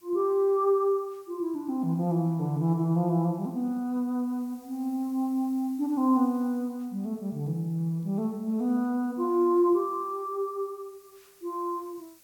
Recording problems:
background hiss; SNR 29 dB

